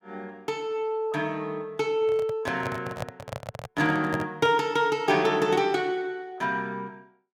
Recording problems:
microphone handling noise; from 2 to 4.5 s; peak -2 dB vs average level

